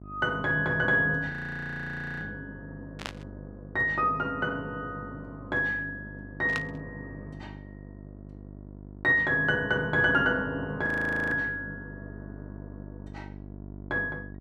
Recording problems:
hum; 50 Hz, harmonics up to 750 Hz, SNR 17 dB
audio freezing; at 1.5 s for 1 s and at 11 s
static burst; at 3 s and at 6.5 s; peak -2 dB vs average level

